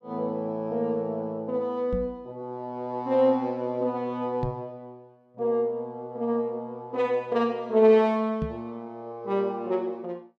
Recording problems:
microphone thump; at 2 s, at 4.5 s and at 8.5 s; peak 0 dB vs average level

